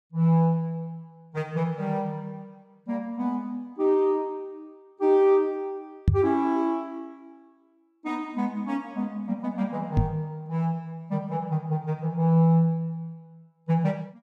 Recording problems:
microphone thump; at 6 s and at 10 s; peak +9 dB vs average level

